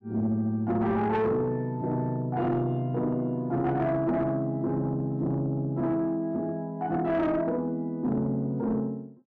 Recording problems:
distortion; soft clipping, signal-to-distortion ratio 12 dB

